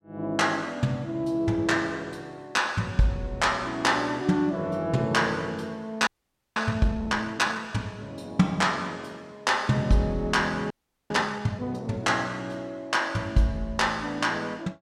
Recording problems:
audio freezing; at 6 s and at 11 s

